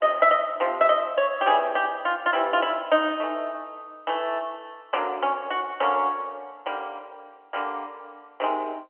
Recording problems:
phone line; 260 Hz to 3.3 kHz, G.711

